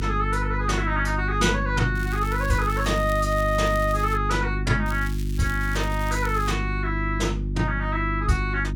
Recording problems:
electrical hum; 50 Hz, harmonics up to 350 Hz, SNR 3 dB
crackling; from 2 to 4 s and from 5 to 6.5 s; loose cable, SNR 17 dB

